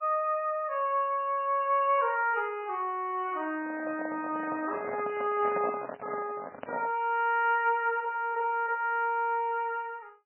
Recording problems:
lossy compression; MP3, log-spectral distance 3 dB, nothing above 2.5 kHz
handling noise; from 3.5 to 7 s; peak -1 dB vs average level

